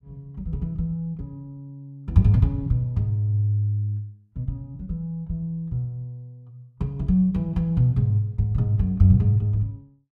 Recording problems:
none

